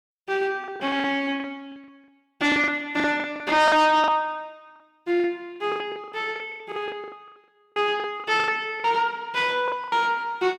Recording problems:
distortion; soft clipping, signal-to-distortion ratio 10 dB
packet loss; 16% of the sound replaced, filled with the last packet

